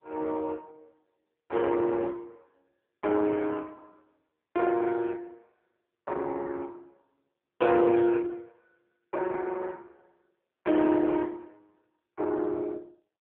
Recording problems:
phone line; 280 Hz to 3 kHz, AMR-NB

